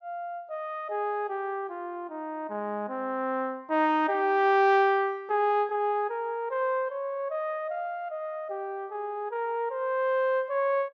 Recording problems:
treble missing; nothing above 8 kHz

